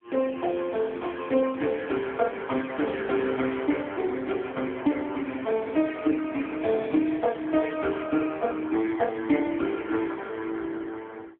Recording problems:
phone line; 220 Hz to 3.4 kHz, AMR-NB

